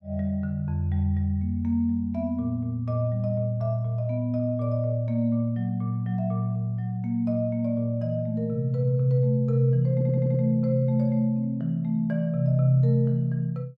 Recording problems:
stutter; at 10 s

